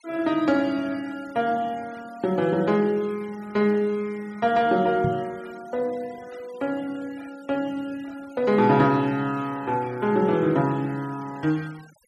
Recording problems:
noise reduction artefacts; signal-to-artefact ratio 25 dB
knock on the microphone; at 5 s; peak +1 dB vs average level

